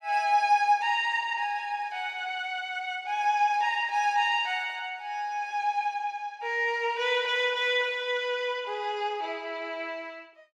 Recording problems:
none

